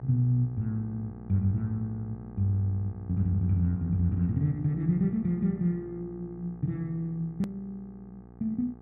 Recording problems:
hum; 60 Hz, harmonics up to 1.3 kHz, SNR 16 dB
hard cut with a click; at 7.5 s

